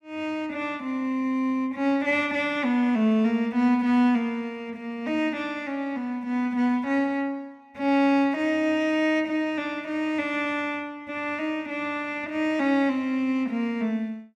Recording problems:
none

